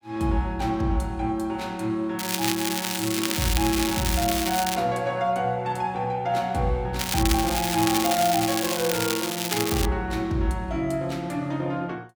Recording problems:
crackling; from 2 to 5 s and from 7 to 10 s; loose cable, SNR 2 dB

